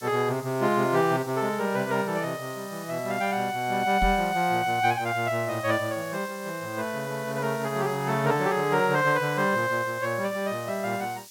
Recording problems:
background hiss; SNR 18 dB
microphone thump; at 4 s; peak +2 dB vs average level

